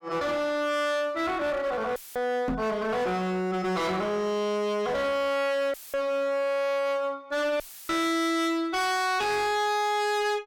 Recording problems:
distortion; hard clipping, uneven, signal-to-distortion ratio 5 dB
audio cutting out; at 2 s, at 5.5 s and at 7.5 s; filled with static
microphone bump; at 2.5 s; peak +1 dB vs average level

